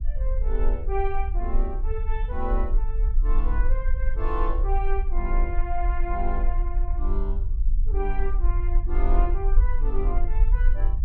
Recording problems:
low-frequency rumble; below 42 Hz, SNR -7 dB

